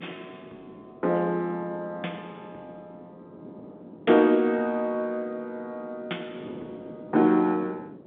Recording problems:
phone line; 240 Hz to 3.5 kHz, G.711
wind noise; below 430 Hz, SNR 20 dB

